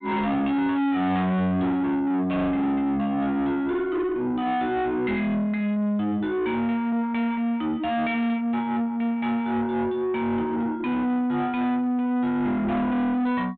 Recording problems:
treble cut off; nothing above 4 kHz
distorted audio; soft clipping, signal-to-distortion ratio 5 dB

